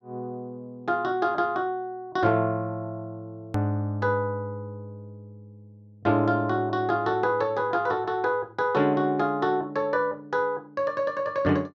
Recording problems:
hard cut with a click; at 3.5 s

